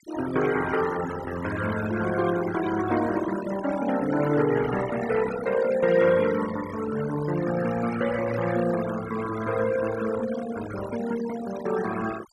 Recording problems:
noise reduction artefacts; signal-to-artefact ratio 11 dB

